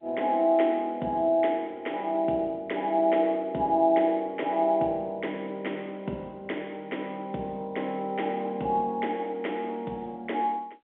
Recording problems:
telephone audio; 170 Hz to 3.5 kHz, G.711

